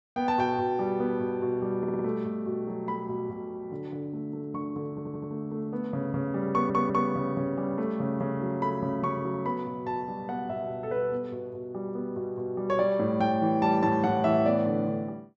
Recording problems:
low-pass filter; nothing above 8 kHz
stutter; at 2 s, at 5 s and at 6.5 s

